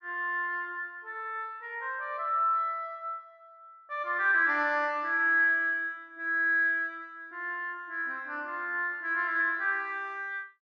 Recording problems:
none

